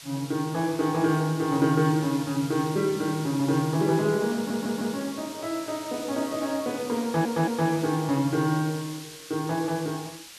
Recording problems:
background hiss; slope +2 dB per octave, SNR 14 dB
audio stuttering; at 4.5 s and at 7 s

